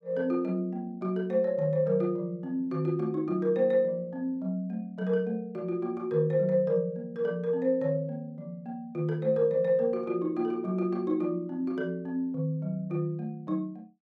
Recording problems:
none

